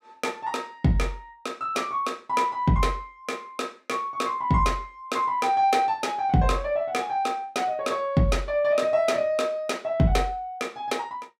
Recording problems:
none

